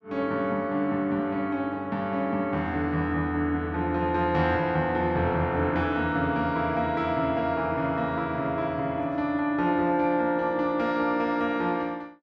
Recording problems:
none

